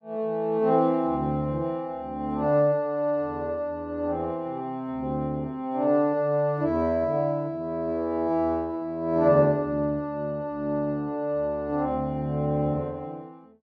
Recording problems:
none

